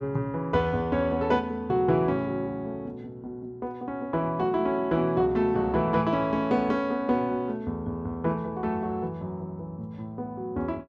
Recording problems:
none

